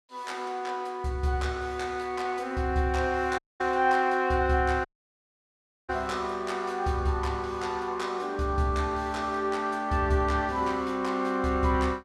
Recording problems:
audio cutting out; at 3.5 s and at 5 s for 1 s

